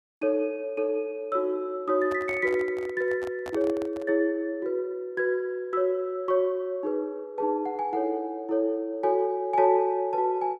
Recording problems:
microphone handling noise; from 2 to 4 s; peak -8 dB vs average level

